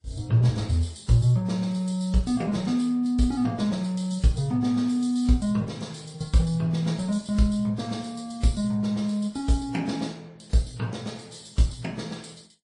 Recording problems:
lossy compression; MP3, then AAC, log-spectral distance 3 dB, nothing above 9.8 kHz

